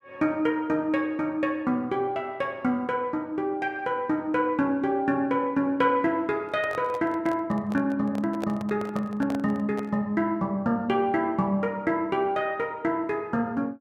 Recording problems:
microphone handling noise; from 6.5 to 10 s; peak -3 dB vs average level

